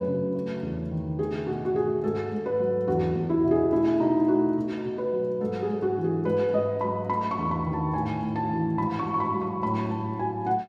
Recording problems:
none

